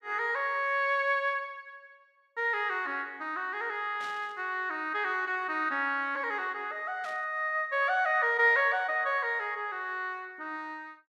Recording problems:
static burst; at 4 s and at 7 s; peak -13 dB vs average level

